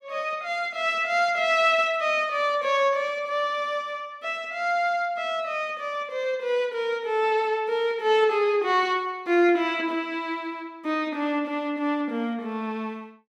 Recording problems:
none

